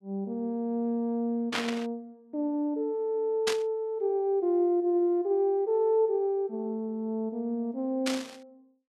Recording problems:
static burst; at 1.5 s, at 3.5 s and at 8 s; peak +3 dB vs average level

